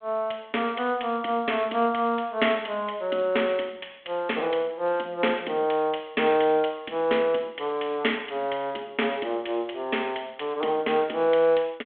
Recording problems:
telephone audio; 260 Hz to 3.5 kHz, G.726

